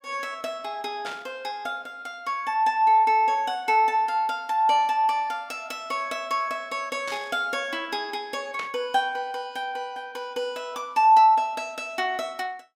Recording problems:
static burst; at 1 s, at 7 s and at 8.5 s; peak -7 dB vs average level

